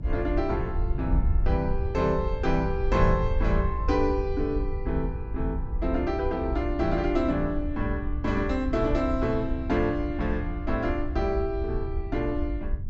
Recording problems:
low-pass filter; nothing above 8 kHz
rumble; below 72 Hz, SNR 8 dB
wind noise; below 68 Hz, SNR 5 dB

